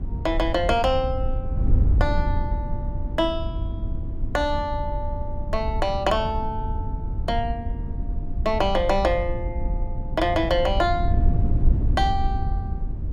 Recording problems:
wind on the microphone; below 82 Hz, SNR 2 dB

